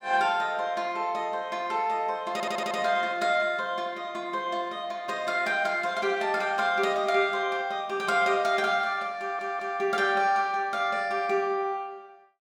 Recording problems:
stutter; at 2.5 s and at 9 s

